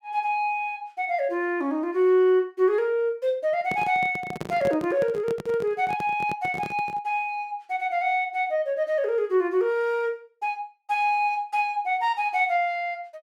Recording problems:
handling noise; from 3.5 to 7 s; peak -4 dB vs average level

